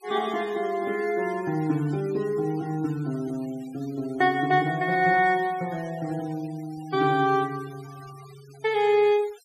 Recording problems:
noise reduction artefacts; signal-to-artefact ratio 23 dB

